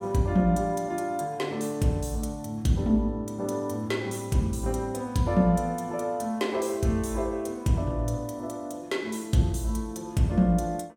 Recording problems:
none

